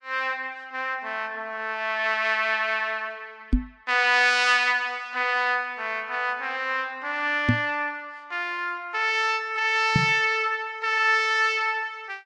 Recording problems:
codec artefacts; Vorbis, log-spectral distance 2 dB
knock on the microphone; at 3.5 s, at 7.5 s and at 10 s; peak +6 dB vs average level

